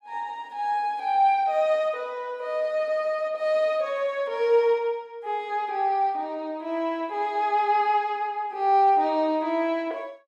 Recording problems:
none

